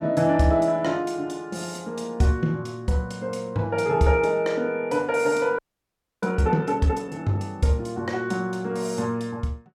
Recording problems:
frozen audio; at 5.5 s for 0.5 s

